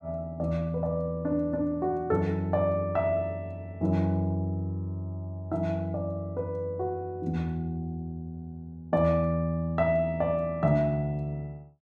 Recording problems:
none

